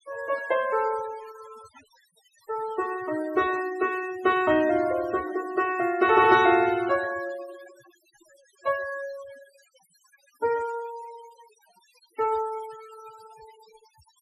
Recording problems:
noise reduction artefacts; signal-to-artefact ratio 18 dB

